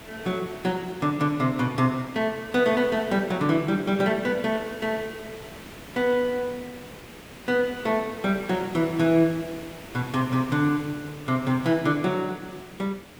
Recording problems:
background hiss; slope -4 dB per octave, SNR 17 dB

